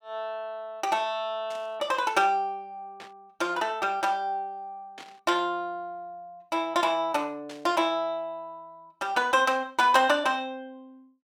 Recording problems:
static burst; 4 times, first at 1.5 s; peak -13 dB vs average level

